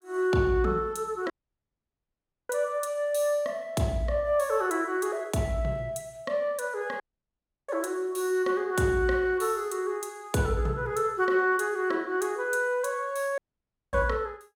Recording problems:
audio cutting out; at 1.5 s for 1 s, at 7 s for 0.5 s and at 13 s for 0.5 s

